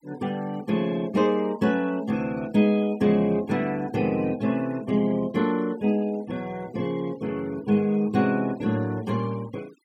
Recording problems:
noise reduction artefacts; signal-to-artefact ratio 24 dB

